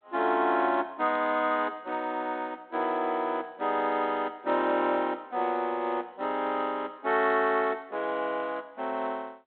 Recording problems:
phone line; 240 Hz to 3.9 kHz, G.726

